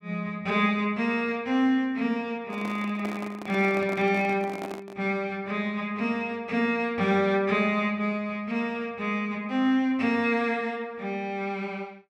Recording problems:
microphone handling noise; from 2.5 to 5 s; peak -5 dB vs average level

